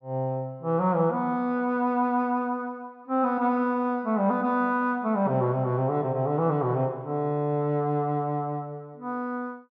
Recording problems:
none

